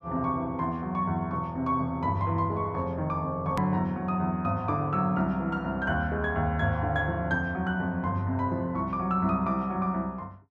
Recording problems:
click at an edit; at 3.5 s

